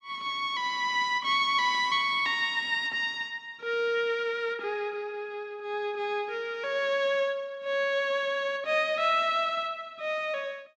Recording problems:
none

